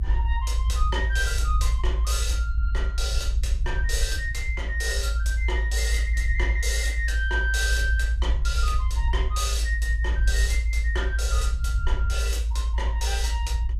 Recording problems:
low-frequency rumble; below 58 Hz, strongest tone 54 Hz, SNR -4 dB

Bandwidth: 14.5 kHz